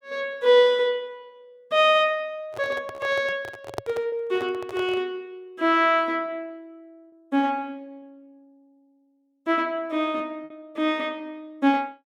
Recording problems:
packet loss; 2% of the sound replaced, filled with repeated pitch periods
handling noise; from 2.5 to 5 s; peak -2 dB vs average level

